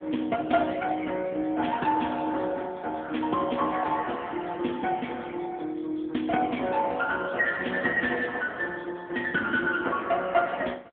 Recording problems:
telephone audio; 220 Hz to 3.4 kHz, AMR-NB

